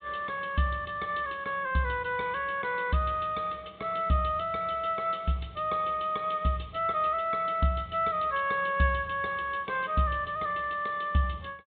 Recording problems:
treble cut off; nothing above 4 kHz

